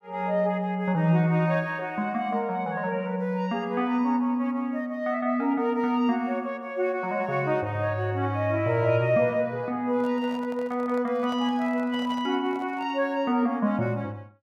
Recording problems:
handling noise; from 10 to 13 s; peak -11 dB vs average level

